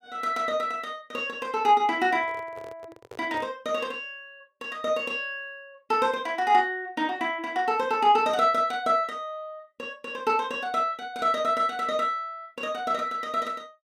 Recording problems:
microphone handling noise; from 2 to 3.5 s; peak -11 dB vs average level

